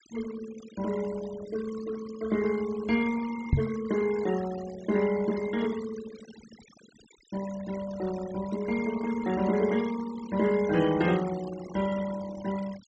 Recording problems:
low-pass filter; nothing above 8 kHz
noise reduction artefacts; signal-to-artefact ratio 15 dB
knock on the microphone; at 3.5 s; peak +9 dB vs average level

